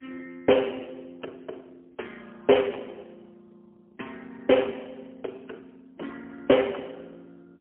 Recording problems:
phone line; 280 Hz to 3.3 kHz, AMR-NB, then MP3

